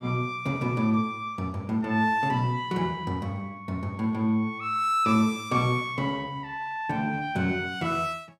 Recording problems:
none

